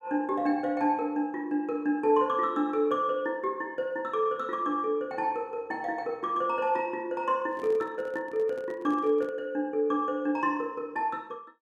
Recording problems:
microphone handling noise; from 7.5 to 9.5 s; peak -11 dB vs average level

